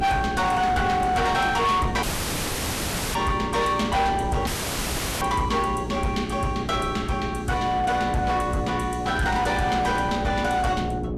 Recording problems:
lossy compression; Vorbis, log-spectral distance 4 dB, nothing above 13.1 kHz
distorted audio; hard clipping, signal-to-distortion ratio 11 dB
hum; 60 Hz, harmonics up to 420 Hz, SNR 9 dB
wind on the microphone; below 490 Hz, SNR 14 dB
audio cutting out; at 2 s for 1 s and at 4.5 s for 0.5 s

